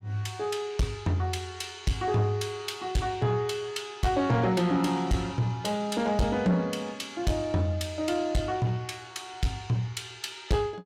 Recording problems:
distorted audio; soft clipping, signal-to-distortion ratio 11 dB

